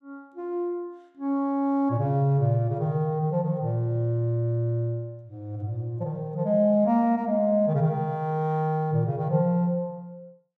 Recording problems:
none

